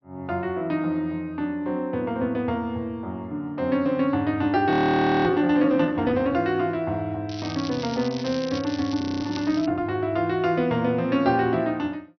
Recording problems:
treble missing; nothing above 6 kHz
audio freezing; at 4.5 s for 0.5 s and at 9 s
crackle; from 7.5 to 9.5 s; loose cable, SNR 14 dB

